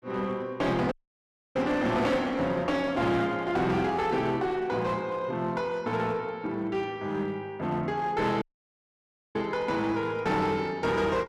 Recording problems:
distortion; hard clipping, uneven, signal-to-distortion ratio 10 dB
dropout; at 1 s for 0.5 s and at 8.5 s for 1 s

